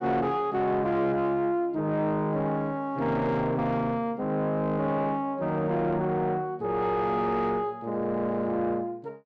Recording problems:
distortion; soft clipping, signal-to-distortion ratio 12 dB

